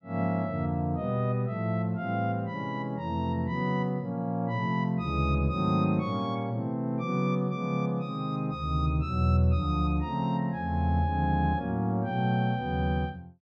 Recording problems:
none

